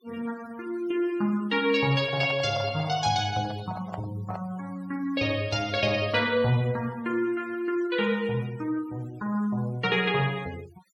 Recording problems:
noise reduction artefacts; signal-to-artefact ratio 22 dB
microphone handling noise; from 2 to 4.5 s; peak -5 dB vs average level

